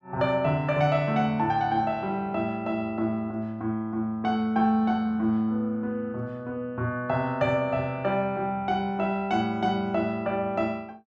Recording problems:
none

